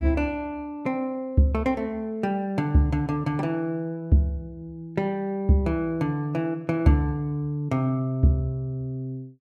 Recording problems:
none

